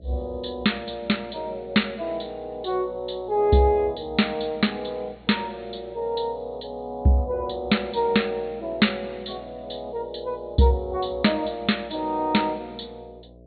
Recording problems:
treble cut off; nothing above 4.4 kHz
hum; 60 Hz, harmonics up to 660 Hz, SNR 24 dB

